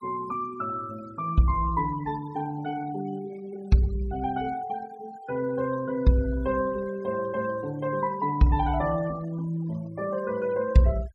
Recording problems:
noise reduction artefacts; signal-to-artefact ratio 20 dB

